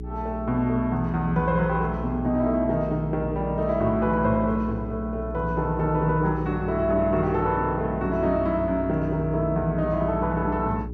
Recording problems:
hum; 60 Hz, harmonics up to 420 Hz, SNR 10 dB

